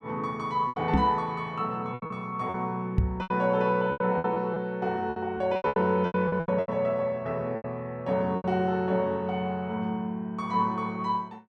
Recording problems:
lost packets; 10% of the sound replaced, filled with repeated pitch periods
microphone thump; at 1 s and at 3 s; peak +8 dB vs average level

